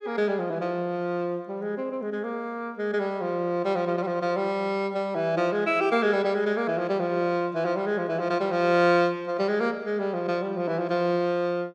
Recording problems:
none

